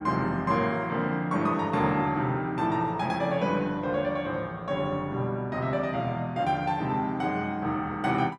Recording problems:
none

